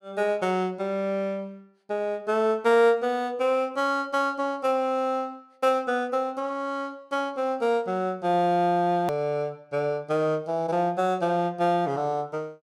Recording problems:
hard cut with a click; at 9 s

